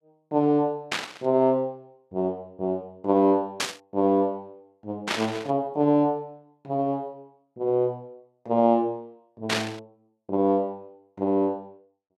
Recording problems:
burst of static; 4 times, first at 1 s; peak +4 dB vs average level

